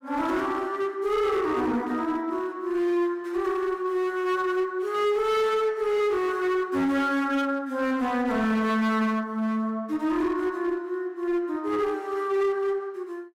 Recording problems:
distortion; hard clipping, uneven, signal-to-distortion ratio 10 dB

